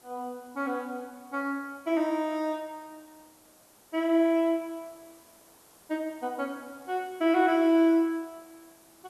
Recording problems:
background hiss; SNR 28 dB

